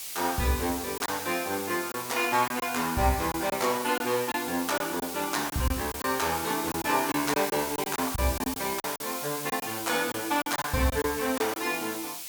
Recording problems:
background hiss; SNR 6 dB
lost packets; 7% of the sound replaced, filled with silence

